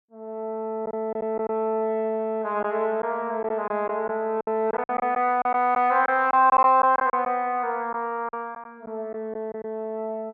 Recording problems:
packet loss; 7% of the sound replaced, filled with silence

